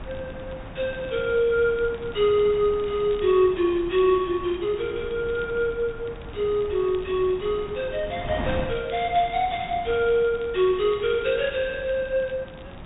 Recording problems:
treble cut off; nothing above 4 kHz
wind on the microphone; below 660 Hz, SNR 15 dB
crackle; vinyl, SNR 29 dB

